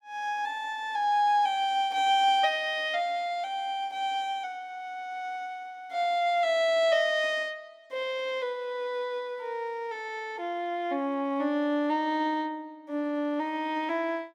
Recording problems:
none

